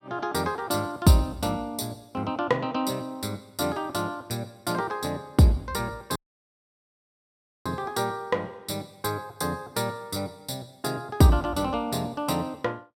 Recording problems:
audio cutting out; at 6 s for 1.5 s

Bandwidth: 16 kHz